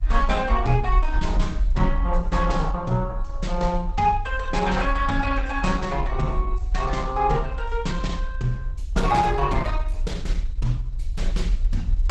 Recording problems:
lossy codec; Opus, log-spectral distance 2 dB
low-frequency rumble; below 48 Hz, SNR 2 dB

